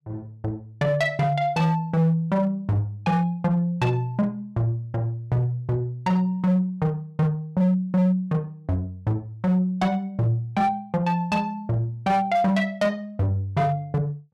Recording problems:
distortion; hard clipping, signal-to-distortion ratio 12 dB

